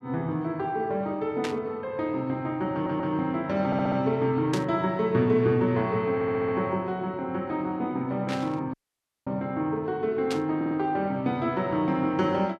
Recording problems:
burst of static; 4 times, first at 1.5 s; peak -3 dB vs average level
audio stuttering; 4 times, first at 2.5 s
audio cutting out; at 8.5 s for 0.5 s

